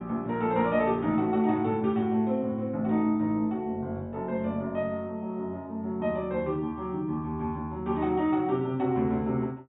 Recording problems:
treble cut off; nothing above 4 kHz

